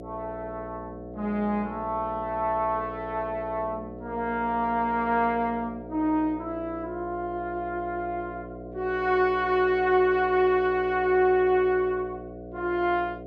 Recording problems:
electrical hum; 60 Hz, harmonics up to 720 Hz, SNR 13 dB

